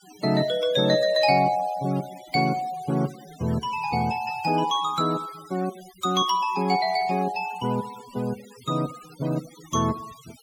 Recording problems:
noise reduction artefacts; signal-to-artefact ratio 19 dB

